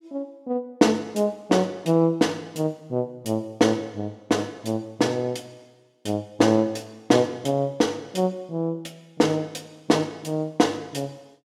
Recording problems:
none

